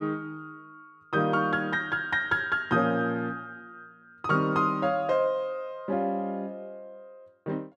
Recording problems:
none

